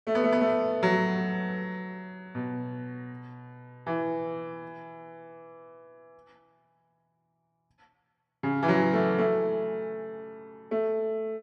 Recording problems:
none

